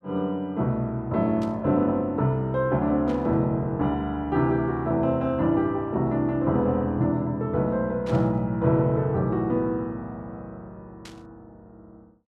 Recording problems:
static burst; 4 times, first at 1.5 s; peak -14 dB vs average level

